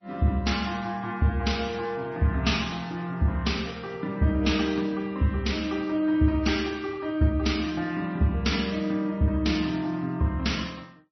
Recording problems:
lossy codec; MP3, then MP3, log-spectral distance 3 dB, nothing above 5.8 kHz

